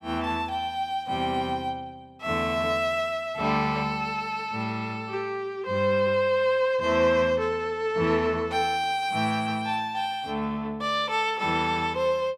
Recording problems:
none

